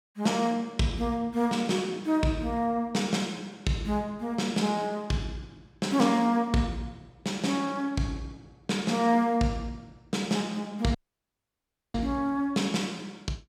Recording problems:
audio cutting out; at 11 s for 1 s

